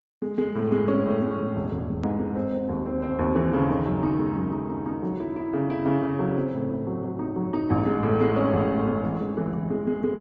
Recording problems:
low-pass filter; nothing above 7.6 kHz
lossy codec; Opus, log-spectral distance 2 dB
click at an edit; at 2 s

